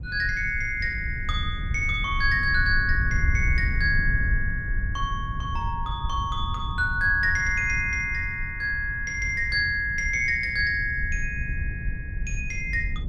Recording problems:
rumble; below 88 Hz, SNR 6 dB

